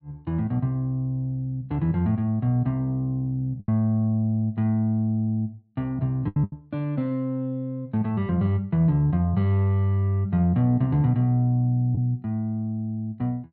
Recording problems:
packet loss; 2% of the sound replaced, filled with the last packet

